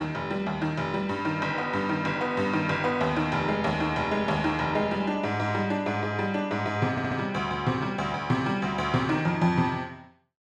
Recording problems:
stutter; at 7 s

